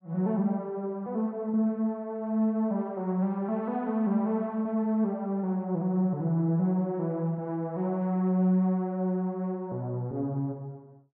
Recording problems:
none

